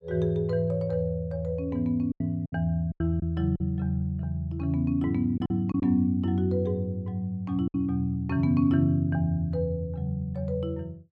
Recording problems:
packet loss; 4% of the sound replaced, filled with silence

